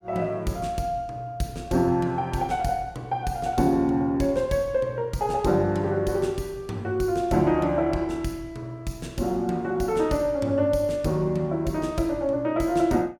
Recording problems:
none

